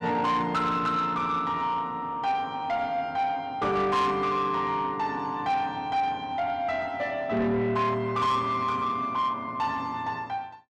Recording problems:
distortion; soft clipping, signal-to-distortion ratio 12 dB

